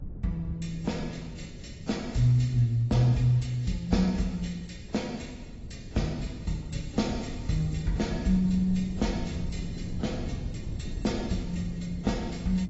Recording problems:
lossy codec; AAC, log-spectral distance 3 dB, nothing above 7.6 kHz
mains hum; 60 Hz, harmonics up to 420 Hz, SNR 30 dB
wind on the microphone; below 160 Hz, SNR 11 dB

